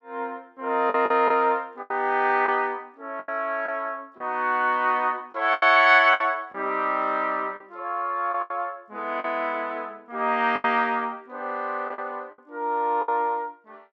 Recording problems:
packet loss; 7% of the sound replaced, filled with the last packet

